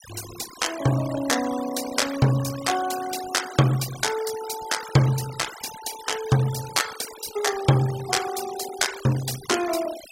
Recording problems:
denoising artefacts; signal-to-artefact ratio 12 dB

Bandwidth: 16 kHz